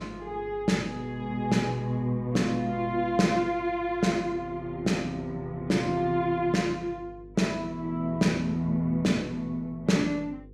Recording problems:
electrical hum; 50 Hz, harmonics up to 500 Hz, SNR 22 dB

